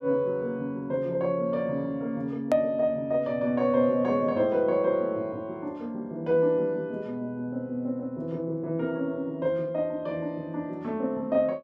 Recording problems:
hard cut with a click; at 2.5 s

